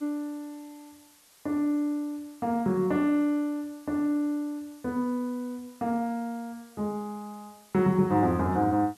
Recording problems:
hiss; slope 0 dB per octave, SNR 27 dB

